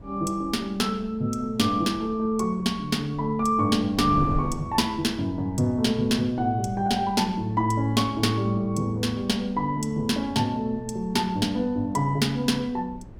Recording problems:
wind noise; below 240 Hz, SNR 17 dB

